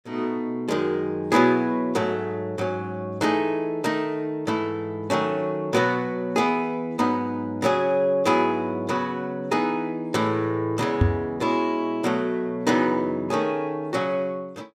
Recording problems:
microphone thump; at 11 s; peak +8 dB vs average level

